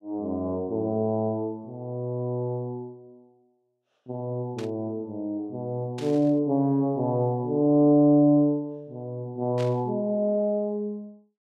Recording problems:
burst of static; at 4.5 s, at 6 s and at 9.5 s; peak -11 dB vs average level

